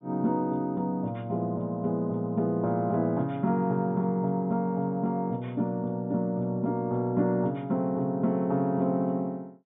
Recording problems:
treble cut off; nothing above 4 kHz

